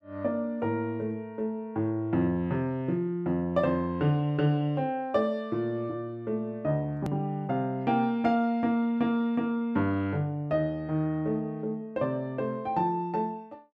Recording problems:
edit click; at 7 s

